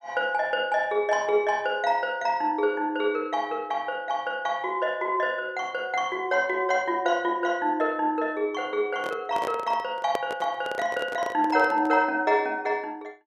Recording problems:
microphone handling noise; from 9 to 12 s; peak 0 dB vs average level

